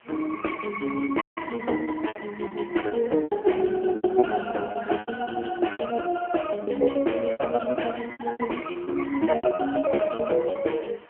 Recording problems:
phone line; 240 Hz to 3.3 kHz, AMR-NB
background hiss; SNR 27 dB
lost packets; 14% of the sound replaced, filled with repeated pitch periods
dropout; at 1 s

